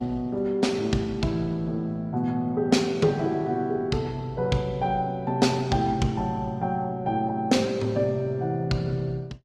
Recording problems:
lossy compression; Opus, log-spectral distance 2 dB, nothing above 15.6 kHz

